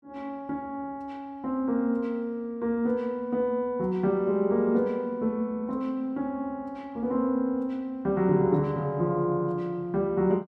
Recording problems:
none

